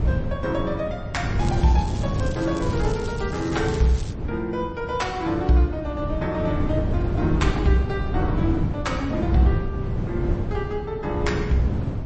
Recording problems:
codec artefacts; MP3, log-spectral distance 2 dB, nothing above 8 kHz
wind on the microphone; below 200 Hz, SNR 2 dB
crackling; from 1.5 to 4 s; loose cable, SNR 16 dB

